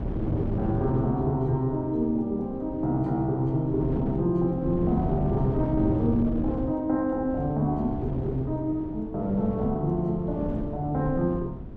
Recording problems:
wind noise; below 280 Hz, SNR 7 dB

